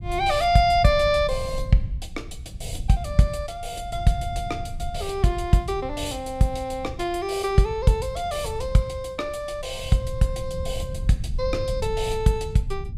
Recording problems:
rumble; below 96 Hz, SNR 11 dB

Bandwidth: 15 kHz